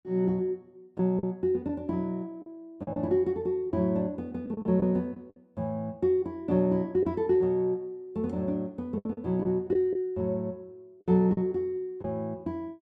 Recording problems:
lost packets; 5% of the sound replaced, filled with the last packet

